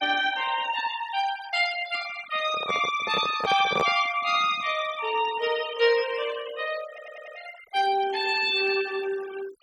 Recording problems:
noise reduction artefacts; signal-to-artefact ratio 15 dB
handling noise; from 2.5 to 4 s; peak +2 dB vs average level
audio stuttering; at 7 s

